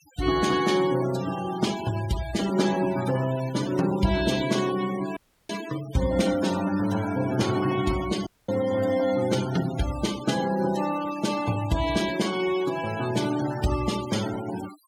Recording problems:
denoising artefacts; signal-to-artefact ratio 13 dB
dropout; at 5 s and at 8.5 s

